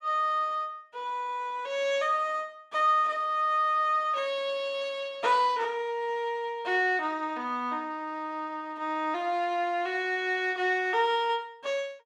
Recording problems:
none

